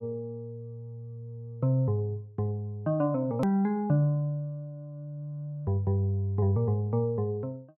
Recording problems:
edit click; at 3.5 s

